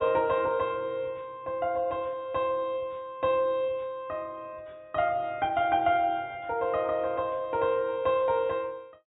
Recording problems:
treble missing; nothing above 4 kHz

